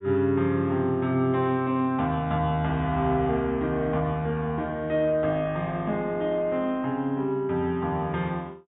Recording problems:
treble cut off; nothing above 4 kHz

